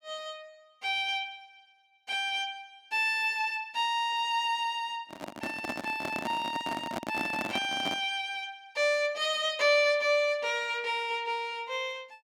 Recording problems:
microphone handling noise; from 5 to 8 s; peak -1 dB vs average level

